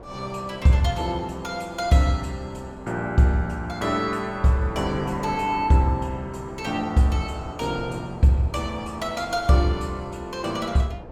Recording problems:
wind on the microphone; below 630 Hz, SNR 17 dB

